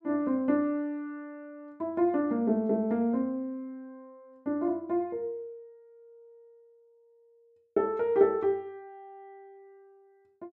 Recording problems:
none

